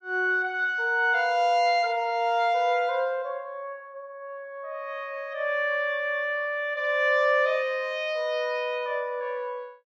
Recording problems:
none

